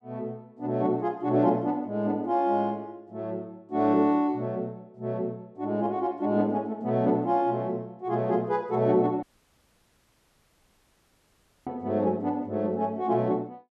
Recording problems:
dropout; at 9 s for 2.5 s

